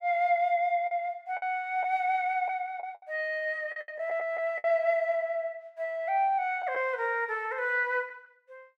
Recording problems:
lost packets; 5% of the sound replaced, filled with the last packet

